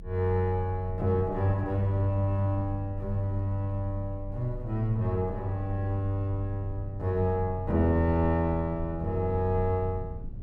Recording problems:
low-frequency rumble; below 86 Hz, strongest tone 32 Hz, SNR 13 dB

